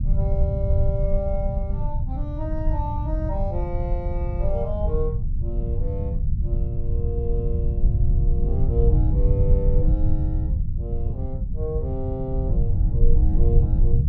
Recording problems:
rumble; below 90 Hz, SNR -8 dB

